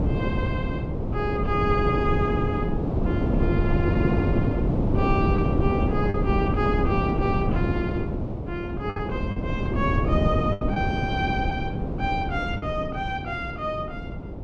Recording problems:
wind on the microphone; below 320 Hz, SNR -3 dB
lost packets; 2% of the sound replaced, filled with the last packet

